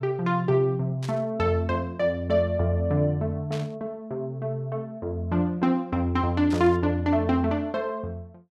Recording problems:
static burst; at 1 s, at 3.5 s and at 6.5 s; peak -10 dB vs average level

